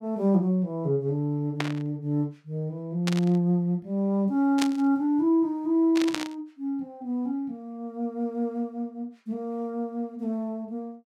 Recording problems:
burst of static; 4 times, first at 1.5 s; peak +2 dB vs average level

